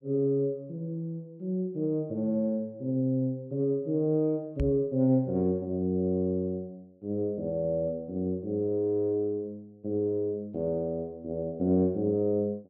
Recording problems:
knock on the microphone; at 4.5 s; peak +1 dB vs average level

